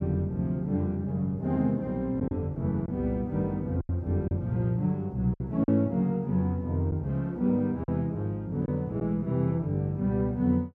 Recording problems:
lost packets; 3% of the sound replaced, filled with silence

